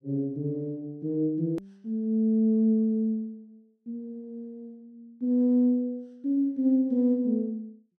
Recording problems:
hard cut with a click; at 1.5 s

